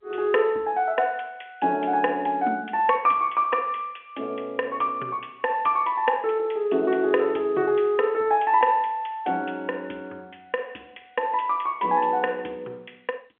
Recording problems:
telephone audio; 300 Hz to 3.3 kHz, G.711

